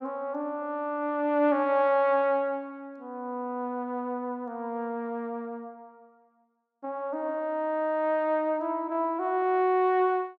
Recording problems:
none

